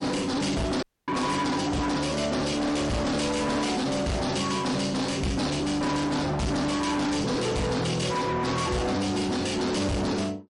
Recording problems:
lossy compression; MP3, log-spectral distance 4 dB, nothing above 10.4 kHz
distortion; hard clipping, signal-to-distortion ratio 6 dB
audio cutting out; at 1 s

